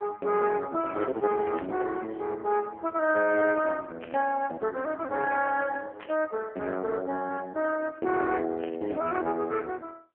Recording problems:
telephone audio; 280 Hz to 3.1 kHz, AMR-NB
static burst; 4 times, first at 1.5 s; peak -9 dB vs average level

